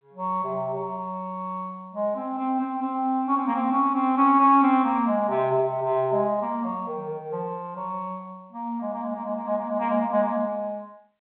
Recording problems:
telephone audio; 220 Hz to 3.4 kHz, G.726

